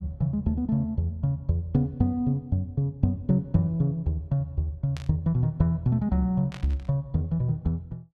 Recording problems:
static burst; at 5 s and at 6.5 s; peak -11 dB vs average level

